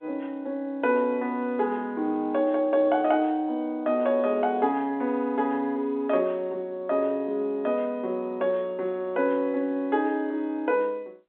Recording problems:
telephone audio; 220 Hz to 3.8 kHz, G.711

